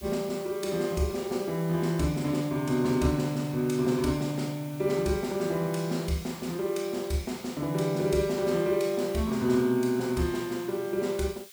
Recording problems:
hiss; slope +4 dB per octave, SNR 19 dB

